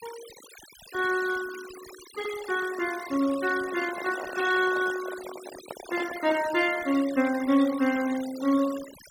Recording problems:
denoising artefacts; signal-to-artefact ratio 15 dB
handling noise; from 3.5 to 6.5 s; peak -7 dB vs average level

